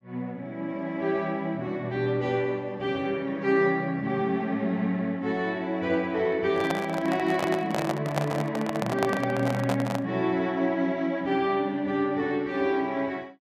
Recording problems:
handling noise; from 6.5 to 10 s; peak +3 dB vs average level

